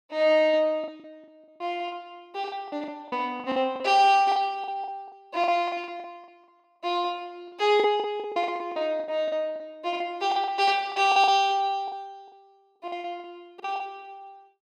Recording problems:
packet loss; 14% of the sound replaced, filled with the last packet

